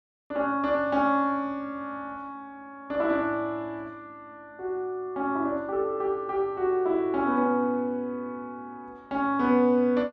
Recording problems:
none

